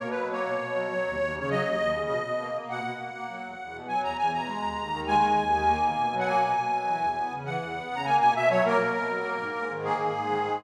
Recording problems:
none

